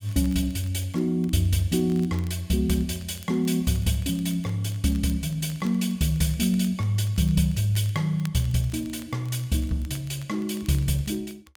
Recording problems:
crackle; vinyl, SNR 26 dB

